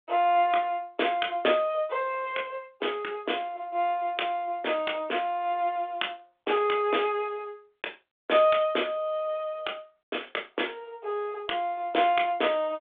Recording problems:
telephone audio; 300 Hz to 3.6 kHz, G.726

